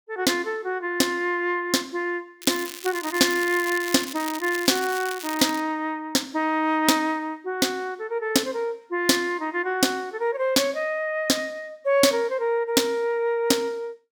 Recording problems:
crackling; from 2.5 to 5.5 s; loose cable, SNR 11 dB

